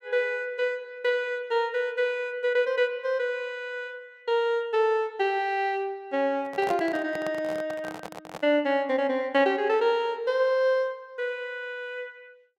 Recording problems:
handling noise; from 6.5 to 8.5 s; peak -4 dB vs average level

